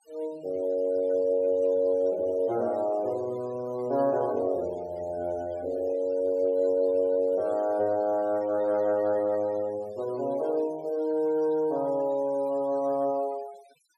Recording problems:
noise reduction artefacts; signal-to-artefact ratio 24 dB

